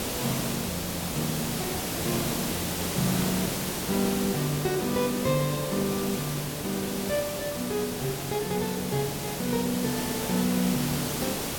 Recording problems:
background hiss; slope -4 dB per octave, SNR 1 dB

